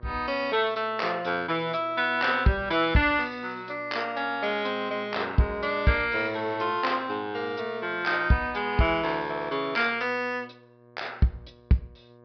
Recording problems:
treble missing; nothing above 5.5 kHz
hum; 60 Hz, harmonics up to 1.8 kHz, SNR 25 dB

